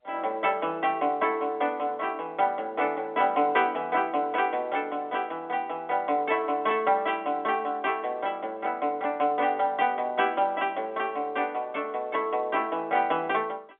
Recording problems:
telephone audio; 260 Hz to 3.5 kHz, G.711

